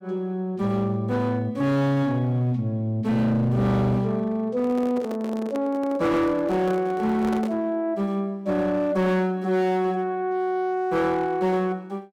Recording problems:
distortion; hard clipping, signal-to-distortion ratio 11 dB
microphone handling noise; from 4.5 to 7.5 s; peak -5 dB vs average level

